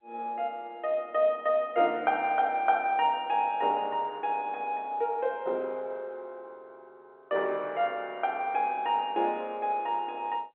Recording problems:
telephone audio; 300 Hz to 3.3 kHz, G.711

